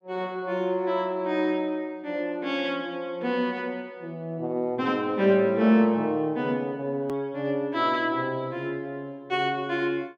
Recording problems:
edit click; at 7 s

